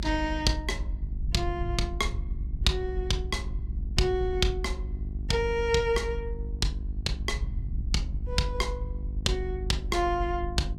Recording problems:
electrical hum; 50 Hz, harmonics up to 700 Hz, SNR 15 dB
low-frequency rumble; below 64 Hz, SNR 5 dB

